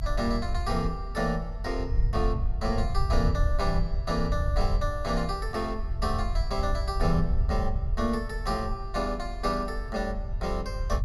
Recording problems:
low-frequency rumble; below 72 Hz, SNR 1 dB

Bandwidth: 15 kHz